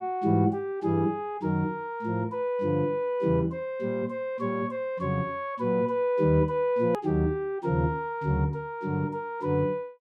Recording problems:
hard cut with a click; at 7 s

